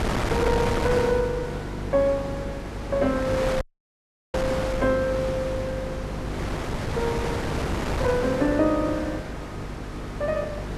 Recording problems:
hum; 50 Hz, harmonics up to 500 Hz, SNR 10 dB
wind noise; below 1.1 kHz, SNR 4 dB
dropout; at 3.5 s for 0.5 s

